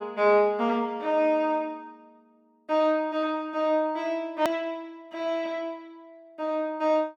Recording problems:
hard cut with a click; at 4.5 s

